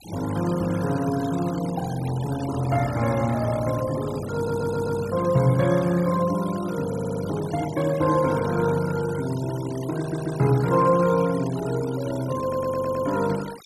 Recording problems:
denoising artefacts; signal-to-artefact ratio 17 dB
stutter; 4 times, first at 4.5 s

